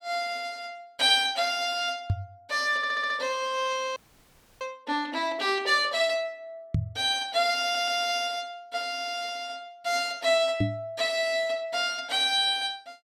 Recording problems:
knock on the microphone; at 2 s, at 6.5 s and at 11 s; peak +4 dB vs average level
stutter; at 3 s and at 7.5 s
frozen audio; at 4 s for 0.5 s

